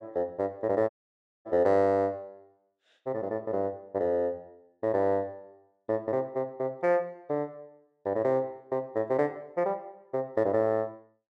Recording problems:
audio cutting out; at 1 s for 0.5 s

